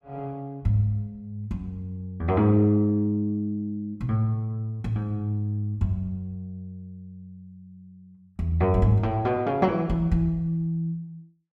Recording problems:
none

